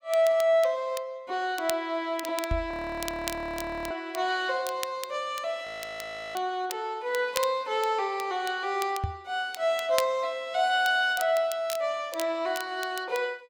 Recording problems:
crackle; vinyl, SNR 13 dB
microphone thump; at 2.5 s, at 6.5 s and at 9 s; peak +2 dB vs average level
audio freezing; at 2.5 s for 1 s and at 5.5 s for 0.5 s

